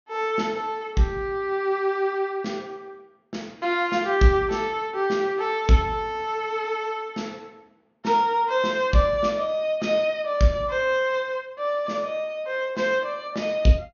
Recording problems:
treble missing; nothing above 6.6 kHz

